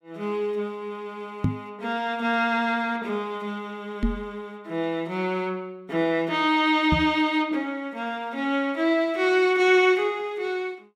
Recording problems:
knock on the microphone; at 1.5 s, at 4 s and at 7 s; peak +5 dB vs average level

